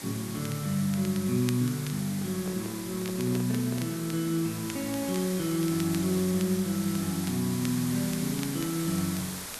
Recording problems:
hiss; slope -1 dB per octave, SNR 8 dB
crackle; vinyl, SNR 18 dB
handling noise; from 2 to 4 s; peak -7 dB vs average level

